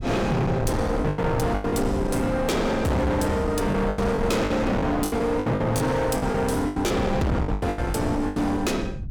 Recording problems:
distorted audio; hard clipping, signal-to-distortion ratio 6 dB
low-frequency rumble; below 220 Hz, SNR 8 dB
packet loss; 12% of the sound replaced, filled with the last packet

